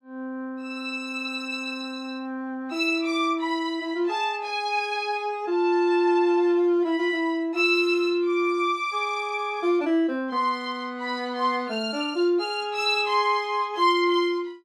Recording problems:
none

